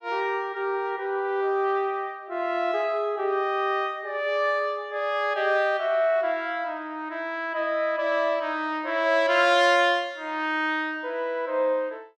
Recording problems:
none

